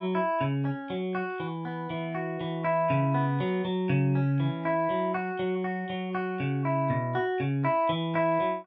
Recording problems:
none

